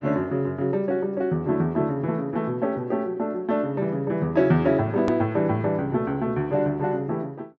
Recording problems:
treble cut off; nothing above 8 kHz
edit click; at 5 s

